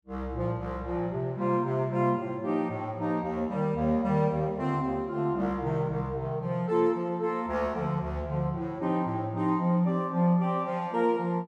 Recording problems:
none

